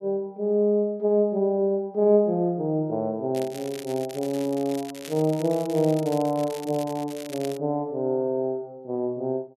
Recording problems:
crackle; from 3.5 to 7.5 s; loose cable, SNR 18 dB

